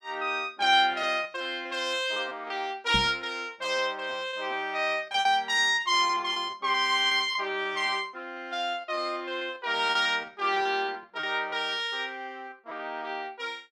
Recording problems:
packet loss; 10% of the sound replaced, filled with repeated pitch periods
microphone bump; at 3 s; peak -2 dB vs average level

